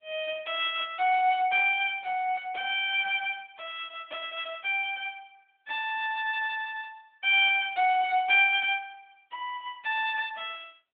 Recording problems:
telephone audio; 280 Hz to 3.6 kHz, AMR-NB

